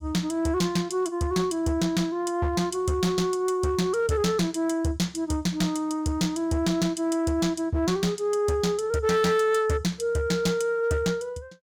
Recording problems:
distorted audio; hard clipping, uneven, signal-to-distortion ratio 12 dB

